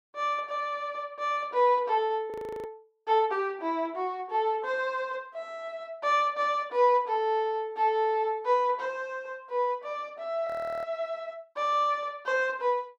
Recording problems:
frozen audio; at 2.5 s and at 10 s

